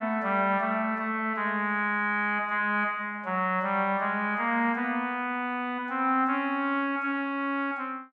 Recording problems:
none

